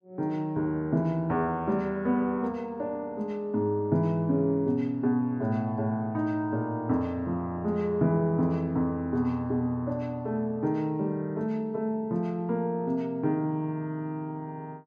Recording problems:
none

